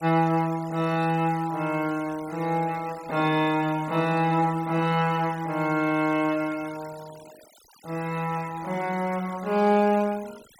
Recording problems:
noise reduction artefacts; signal-to-artefact ratio 21 dB

